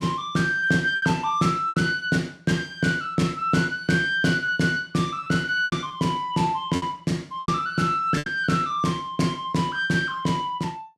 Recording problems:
lost packets; 5% of the sound replaced, filled with repeated pitch periods

